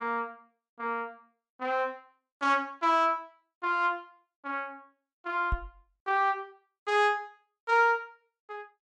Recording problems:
microphone thump; at 5.5 s; peak +1 dB vs average level

